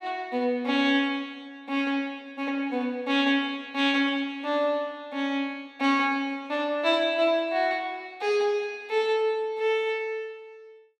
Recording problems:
none

